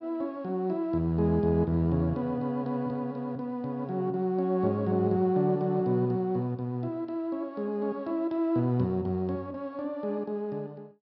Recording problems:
low-pass filter; nothing above 5.5 kHz

